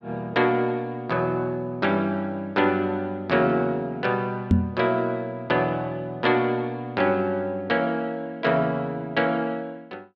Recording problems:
knock on the microphone; at 4.5 s; peak +9 dB vs average level

